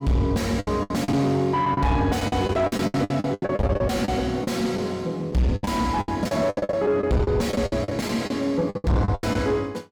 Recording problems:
distorted audio; soft clipping, signal-to-distortion ratio 6 dB
lost packets; 18% of the sound replaced, filled with the last packet

